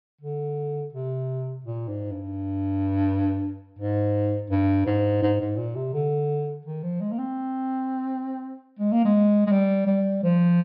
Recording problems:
treble missing; nothing above 5.5 kHz

